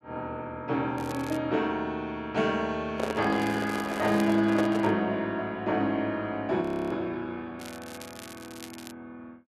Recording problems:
crackle; at 1 s, at 3.5 s and from 7.5 to 9 s; loose cable, SNR 18 dB
handling noise; from 3 to 5 s; peak +1 dB vs average level
audio freezing; at 6.5 s

